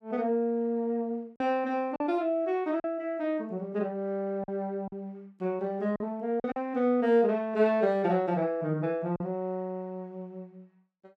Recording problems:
packet loss; 3% of the sound replaced, filled with silence

